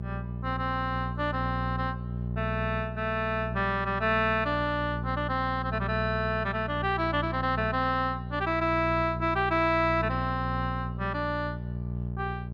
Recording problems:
hum; 60 Hz, harmonics up to 600 Hz, SNR 6 dB

